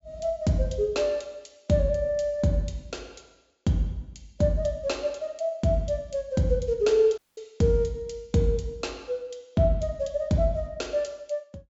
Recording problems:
treble missing; nothing above 8 kHz
audio cutting out; at 7 s

